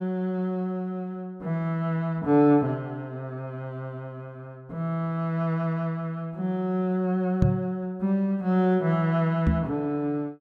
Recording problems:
microphone thump; at 7.5 s and at 9.5 s; peak +8 dB vs average level

